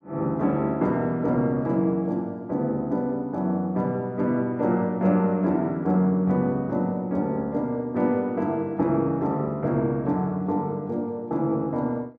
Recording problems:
none

